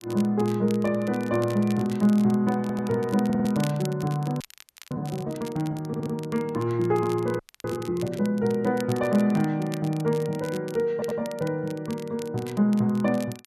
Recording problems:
crackling; vinyl, SNR 20 dB
stutter; 4 times, first at 2.5 s
audio freezing; at 4.5 s for 0.5 s and at 7.5 s

